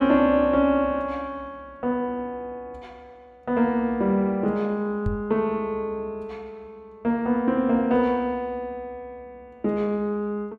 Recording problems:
knock on the microphone; at 5 s; peak +1 dB vs average level

